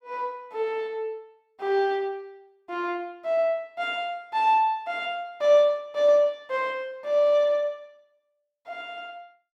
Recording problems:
none

